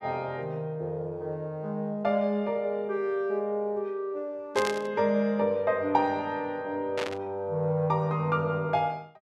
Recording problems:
burst of static; at 4.5 s and at 7 s; peak -1 dB vs average level

